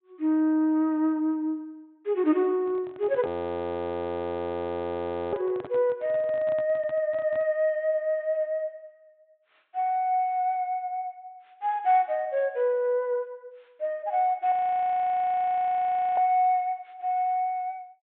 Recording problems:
treble cut off; nothing above 4 kHz
microphone handling noise; from 2.5 to 7.5 s; peak -10 dB vs average level
audio freezing; at 3.5 s for 2 s and at 15 s for 1.5 s

